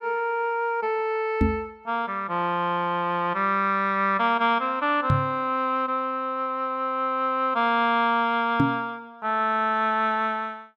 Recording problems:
microphone thump; at 1.5 s, at 5 s and at 8.5 s; peak +6 dB vs average level

